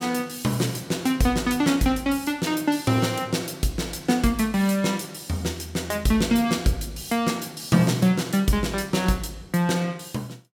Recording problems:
none

